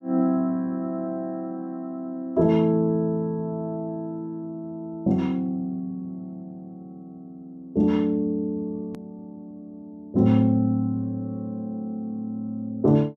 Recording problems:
click at an edit; at 9 s

